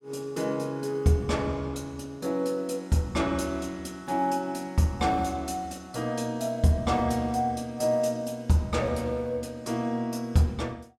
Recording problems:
none

